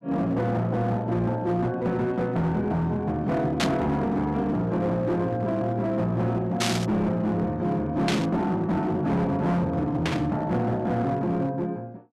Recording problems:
distortion; hard clipping, signal-to-distortion ratio 11 dB
burst of static; 4 times, first at 3.5 s; peak +3 dB vs average level

